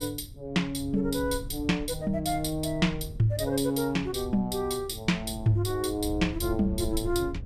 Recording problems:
wind on the microphone; below 98 Hz, SNR 12 dB

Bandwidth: 14.5 kHz